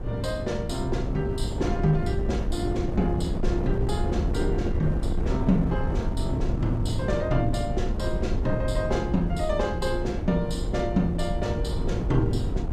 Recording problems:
wind on the microphone; below 170 Hz, SNR 1 dB

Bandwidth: 14.5 kHz